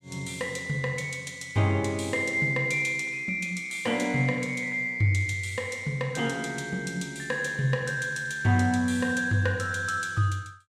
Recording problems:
none

